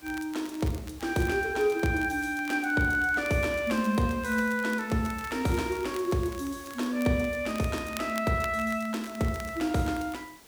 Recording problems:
background hiss; slope -2 dB per octave, SNR 22 dB
crackle; vinyl, SNR 20 dB

